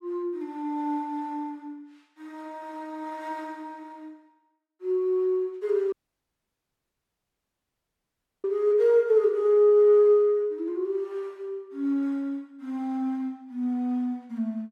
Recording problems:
audio cutting out; at 6 s for 2.5 s

